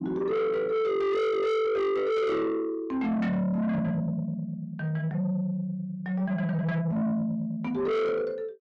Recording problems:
distorted audio; soft clipping, signal-to-distortion ratio 6 dB

